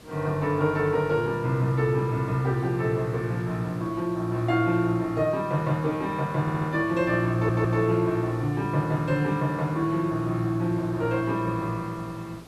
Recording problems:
background hiss; slope -5 dB per octave, SNR 22 dB
stutter; at 6.5 s and at 7.5 s

